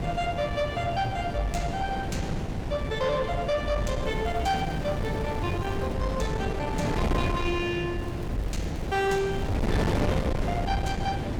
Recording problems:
distortion; soft clipping, signal-to-distortion ratio 12 dB
wind noise; below 440 Hz, SNR 1 dB
crackle; from 4 to 6 s and from 8 to 9.5 s; loose cable, SNR 26 dB

